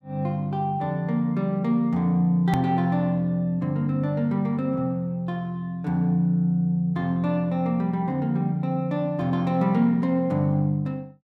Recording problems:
hard cut with a click; at 2.5 s

